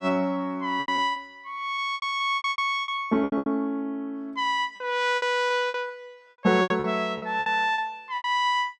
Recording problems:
lost packets; 14% of the sound replaced, filled with repeated pitch periods

